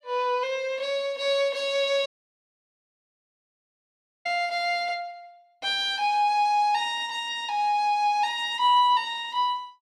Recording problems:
dropout; at 2 s for 2 s

